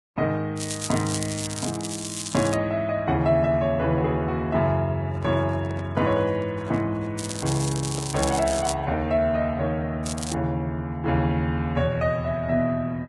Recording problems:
lossy compression; Vorbis, log-spectral distance 5 dB
crackle; from 0.5 to 2.5 s, from 7 to 8.5 s and at 10 s; loose cable, SNR 8 dB
handling noise; from 5 to 9 s; peak -8 dB vs average level

